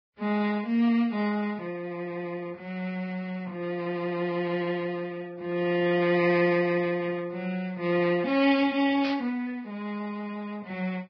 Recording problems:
lossy compression; Vorbis, then Vorbis, log-spectral distance 2 dB, nothing above 5 kHz
static burst; at 9 s; peak -5 dB vs average level

